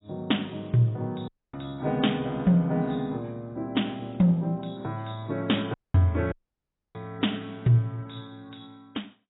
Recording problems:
codec artefacts; AAC, log-spectral distance 6 dB, nothing above 3.8 kHz
dropout; at 1.5 s, at 5.5 s and at 6.5 s for 0.5 s

